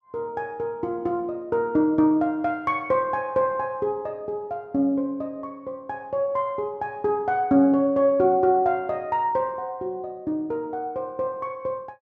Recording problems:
none

